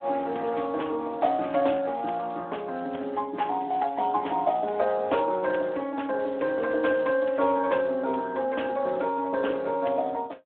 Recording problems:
telephone audio; 320 Hz to 3.4 kHz, Speex

